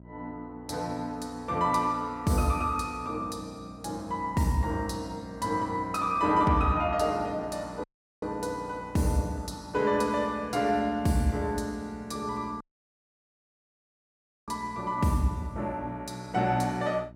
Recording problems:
hum; 60 Hz, harmonics up to 720 Hz, SNR 20 dB
audio cutting out; at 8 s and at 13 s for 2 s

